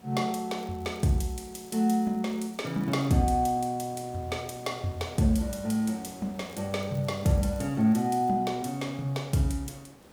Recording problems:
background hiss; slope -6 dB per octave, SNR 23 dB
crackling; from 0.5 to 3 s and from 6.5 to 8.5 s; loose cable, SNR 28 dB

